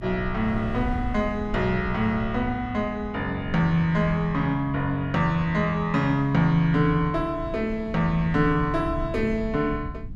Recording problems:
hum; 60 Hz, harmonics up to 300 Hz, SNR 20 dB
low-frequency rumble; below 110 Hz, SNR 14 dB
wind noise; below 160 Hz, SNR 17 dB

